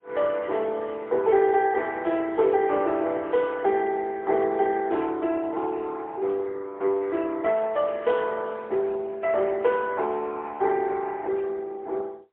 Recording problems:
phone line; 300 Hz to 3.5 kHz, AMR-NB, then MP3

